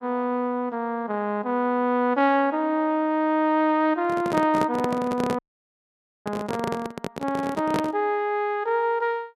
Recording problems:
handling noise; from 4 to 8 s; peak +1 dB vs average level
dropout; at 5.5 s for 1 s

